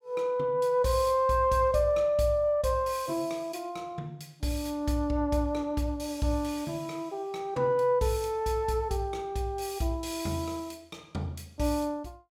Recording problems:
none

